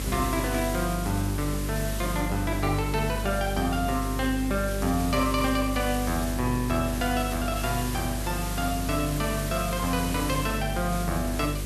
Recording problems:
hum; 50 Hz, harmonics up to 550 Hz, SNR 5 dB
background hiss; slope -1 dB per octave, SNR 8 dB
crackle; from 6.5 to 9 s; loose cable, SNR 27 dB

